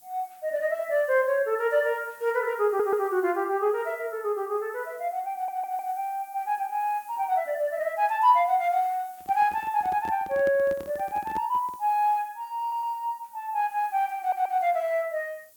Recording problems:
hiss; SNR 25 dB
audio stuttering; 4 times, first at 2.5 s
microphone handling noise; from 9 to 12 s; peak -8 dB vs average level

